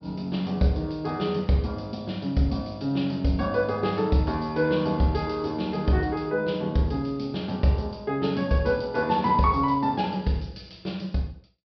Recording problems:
treble missing; nothing above 5.5 kHz

